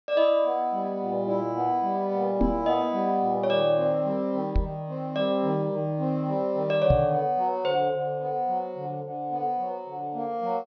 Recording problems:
low-pass filter; nothing above 6 kHz
microphone thump; at 2.5 s, at 4.5 s and at 7 s; peak +5 dB vs average level

